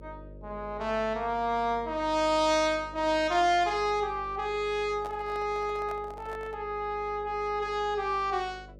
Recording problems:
electrical hum; 50 Hz, harmonics up to 600 Hz, SNR 20 dB
microphone handling noise; from 5 to 6.5 s; peak -10 dB vs average level

